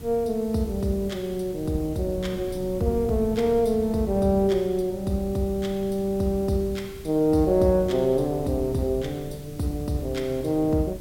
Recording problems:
hiss; slope 0 dB per octave, SNR 24 dB
wind on the microphone; below 210 Hz, SNR 16 dB

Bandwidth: 16.5 kHz